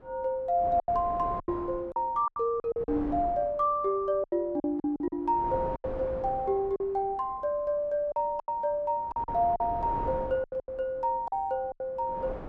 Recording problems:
wind noise; below 630 Hz, SNR 13 dB
lost packets; 10% of the sound replaced, filled with silence

